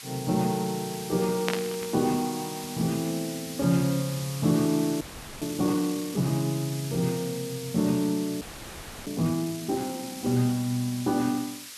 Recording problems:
hiss; slope +3 dB per octave, SNR 11 dB
burst of static; at 1.5 s; peak +3 dB vs average level
frozen audio; at 5 s and at 8.5 s for 0.5 s

